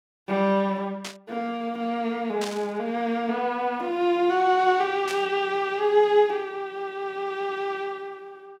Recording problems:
static burst; at 1 s, at 2.5 s and at 5 s; peak -4 dB vs average level

